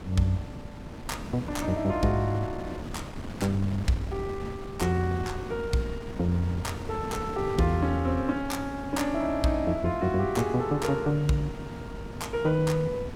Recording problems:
wind on the microphone; below 370 Hz, SNR 10 dB

